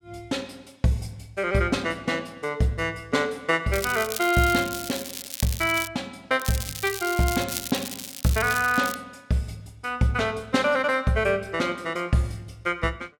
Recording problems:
crackle; from 3.5 to 6 s and from 6.5 to 9 s; loose cable, SNR 8 dB

